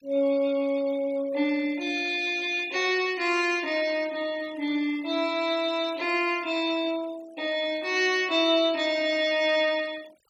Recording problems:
denoising artefacts; signal-to-artefact ratio 21 dB

